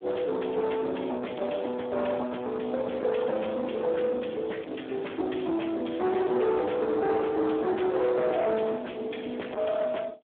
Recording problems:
telephone audio; 260 Hz to 3.4 kHz, Speex
distortion; soft clipping, signal-to-distortion ratio 7 dB

